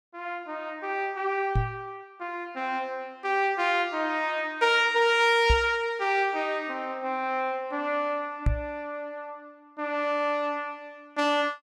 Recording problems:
microphone thump; at 1.5 s, at 5.5 s and at 8.5 s; peak +6 dB vs average level

